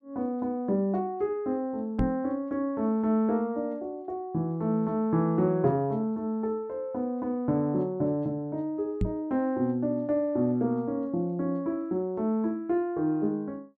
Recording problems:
microphone thump; at 2 s and at 9 s; peak +4 dB vs average level

